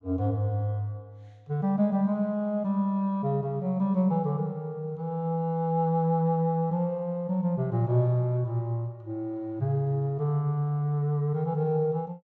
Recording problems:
none

